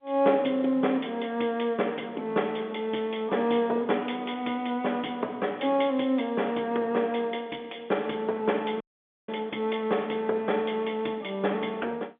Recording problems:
phone line; 220 Hz to 3.5 kHz, G.711
audio cutting out; at 9 s

